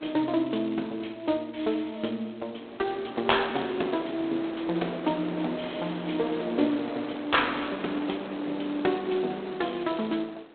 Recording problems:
telephone audio; 240 Hz to 3.9 kHz, G.726
wind on the microphone; below 1.2 kHz, SNR 9 dB

